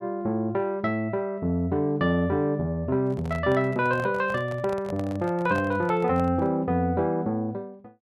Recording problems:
handling noise; from 3 to 6.5 s; peak -8 dB vs average level

